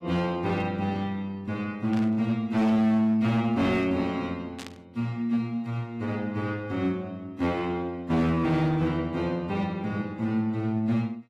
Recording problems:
lossy codec; AAC, log-spectral distance 2 dB
distortion; hard clipping, signal-to-distortion ratio 11 dB
burst of static; at 2 s and at 4.5 s; peak -9 dB vs average level

